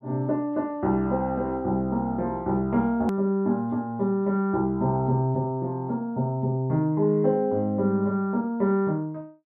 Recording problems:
click at an edit; at 3 s

